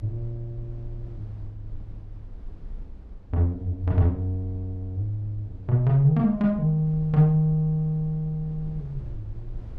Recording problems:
low-frequency rumble; below 60 Hz, strongest tone 28 Hz, SNR 19 dB

